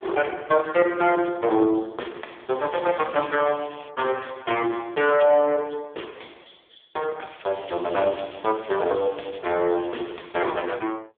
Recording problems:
telephone audio; 300 Hz to 3.4 kHz, AMR-NB
crackling; from 2.5 to 4 s, from 7.5 to 9.5 s and at 10 s; loose cable, SNR 21 dB

